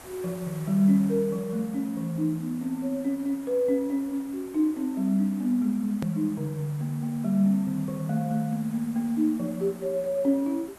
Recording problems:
background hiss; slope -5 dB per octave, SNR 21 dB
edit click; at 6 s

